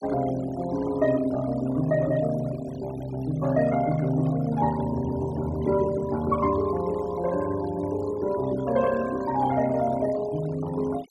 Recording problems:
denoising artefacts; signal-to-artefact ratio 17 dB

